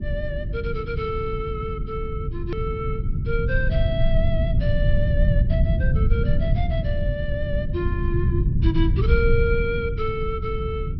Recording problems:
treble cut off; nothing above 5.7 kHz
electrical hum; 50 Hz, harmonics up to 400 Hz, SNR 13 dB
rumble; below 120 Hz, SNR -4 dB
click at an edit; at 2.5 s

